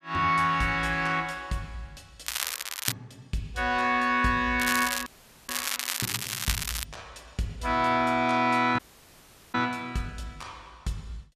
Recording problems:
crackle; at 2.5 s and from 4.5 to 7 s; loose cable, SNR 4 dB
dropout; at 5 s and at 9 s for 1 s

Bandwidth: 14.5 kHz